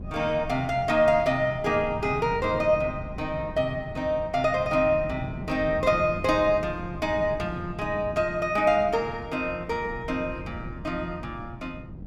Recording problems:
wind noise; below 200 Hz, SNR 13 dB

